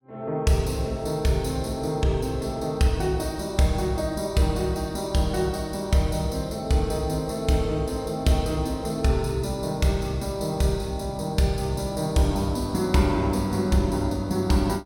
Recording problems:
none

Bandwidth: 17 kHz